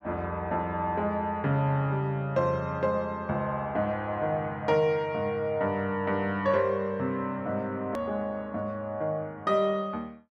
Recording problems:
click at an edit; at 8 s

